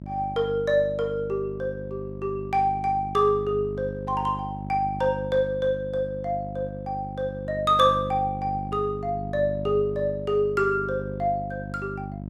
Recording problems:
hum; 50 Hz, harmonics up to 650 Hz, SNR 10 dB

